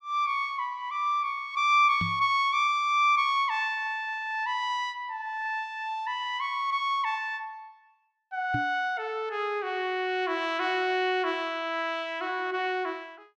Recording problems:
microphone thump; at 2 s and at 8.5 s; peak -2 dB vs average level

